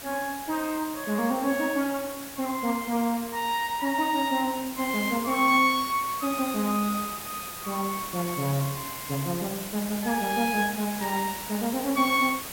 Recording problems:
background hiss; slope -2 dB per octave, SNR 9 dB
static burst; at 11 s; peak -11 dB vs average level

